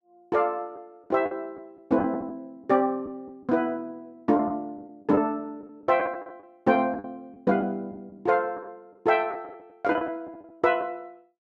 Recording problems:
lost packets; 9% of the sound replaced, filled with the last packet

